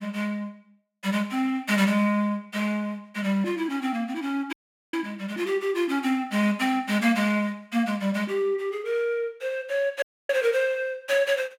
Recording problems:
audio cutting out; at 4.5 s and at 10 s

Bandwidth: 16.5 kHz